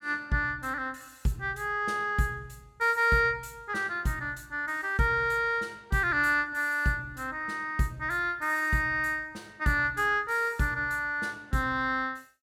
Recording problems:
none

